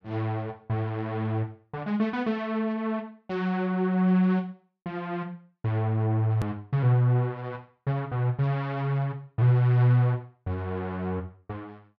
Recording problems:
edit click; at 6.5 s

